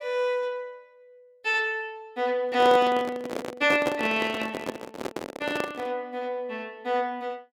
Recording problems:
microphone handling noise; from 2.5 to 6 s; peak +2 dB vs average level

